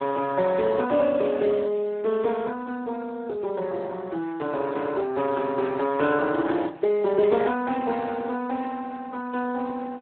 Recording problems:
telephone audio; 260 Hz to 2.7 kHz, Speex

